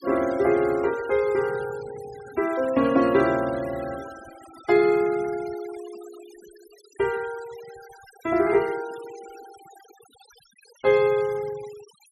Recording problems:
noise reduction artefacts; signal-to-artefact ratio 21 dB

